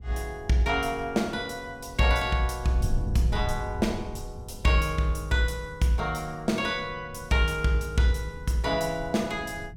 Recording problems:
wind noise; below 110 Hz, SNR 12 dB

